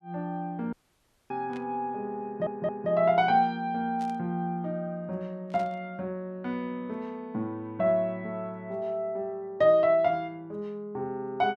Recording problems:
audio cutting out; at 0.5 s for 0.5 s
burst of static; at 1.5 s, at 4 s and at 5.5 s; peak -15 dB vs average level
audio stuttering; at 2.5 s

